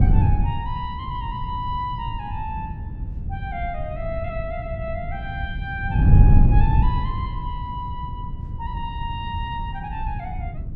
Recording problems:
wind on the microphone; below 120 Hz, SNR -6 dB

